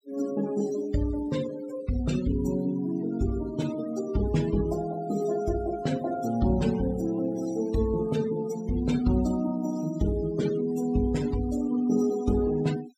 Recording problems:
noise reduction artefacts; signal-to-artefact ratio 16 dB

